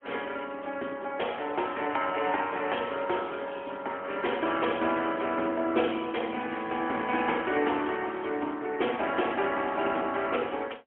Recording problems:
phone line; 240 Hz to 3.2 kHz, AMR-NB, then MP3

